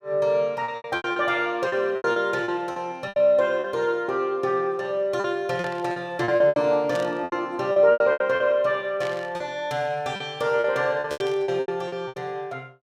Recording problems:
lost packets; 13% of the sound replaced, filled with repeated pitch periods
static burst; 4 times, first at 5.5 s; peak -10 dB vs average level

